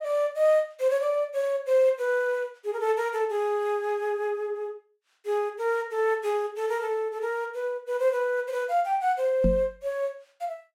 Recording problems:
microphone bump; at 9.5 s; peak +4 dB vs average level

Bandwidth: 16 kHz